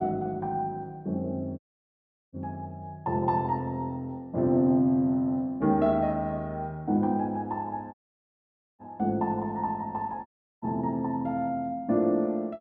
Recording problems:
audio cutting out; at 1.5 s for 0.5 s, at 8 s for 1 s and at 10 s

